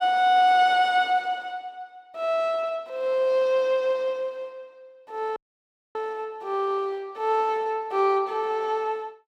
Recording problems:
audio cutting out; at 5.5 s for 0.5 s

